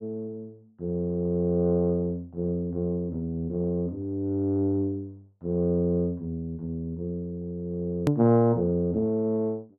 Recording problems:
hard cut with a click; at 8 s

